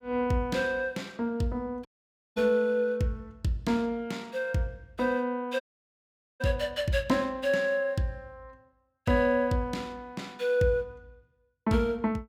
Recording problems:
audio cutting out; at 2 s for 0.5 s and at 5.5 s for 1 s

